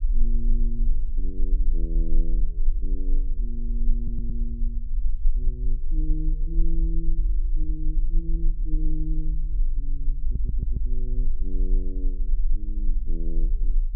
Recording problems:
low-frequency rumble; below 34 Hz, strongest tone 20 Hz, SNR -11 dB
audio stuttering; at 4 s and at 10 s

